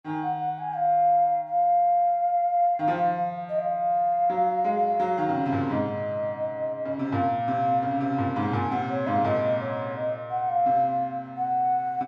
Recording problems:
none

